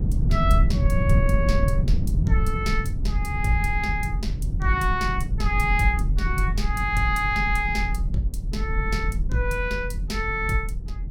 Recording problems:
rumble; below 100 Hz, SNR -1 dB

